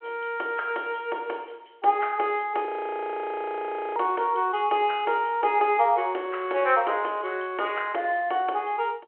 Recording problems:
phone line; 300 Hz to 3.2 kHz, G.726
audio freezing; at 2.5 s for 1.5 s

